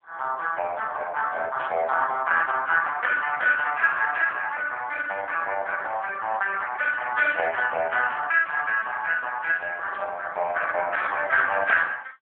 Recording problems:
telephone audio; 410 Hz to 2.7 kHz, AMR-NB
burst of static; at 1.5 s and at 10 s; peak -15 dB vs average level

